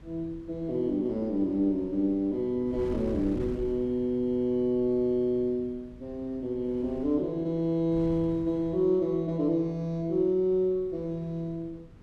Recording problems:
wind noise; below 200 Hz, SNR 18 dB

